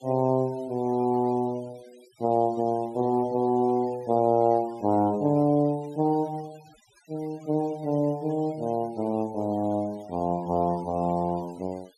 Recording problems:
denoising artefacts; signal-to-artefact ratio 27 dB

